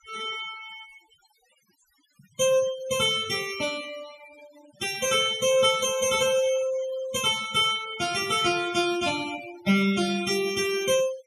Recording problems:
noise reduction artefacts; signal-to-artefact ratio 16 dB

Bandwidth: 14.5 kHz